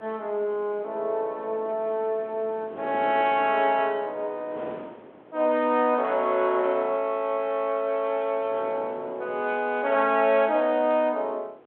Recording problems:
telephone audio; 320 Hz to 3.6 kHz, G.726
wind noise; below 750 Hz, SNR 20 dB

